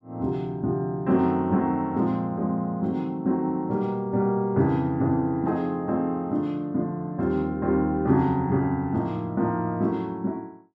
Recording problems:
none

